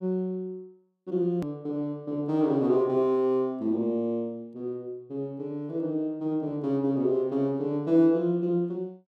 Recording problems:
click at an edit; at 1.5 s

